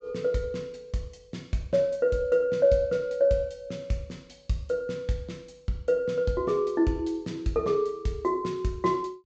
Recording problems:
treble missing; nothing above 8 kHz

